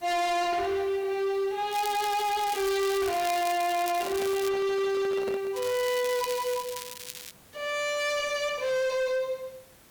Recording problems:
distortion; hard clipping, signal-to-distortion ratio 7 dB
background hiss; slope -3 dB per octave, SNR 26 dB
crackle; from 1.5 to 4.5 s and from 5.5 to 7.5 s; loose cable, SNR 11 dB
handling noise; from 4 to 5.5 s; peak -5 dB vs average level

